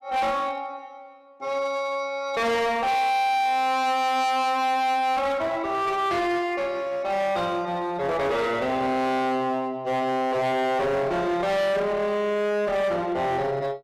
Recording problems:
distorted audio; hard clipping, uneven, signal-to-distortion ratio 6 dB

